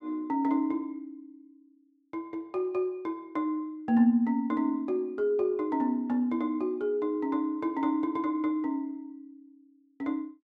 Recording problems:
none

